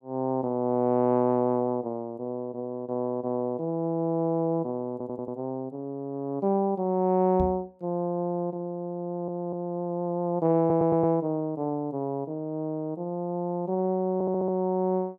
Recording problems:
stutter; 4 times, first at 5 s
microphone thump; at 7.5 s; peak 0 dB vs average level

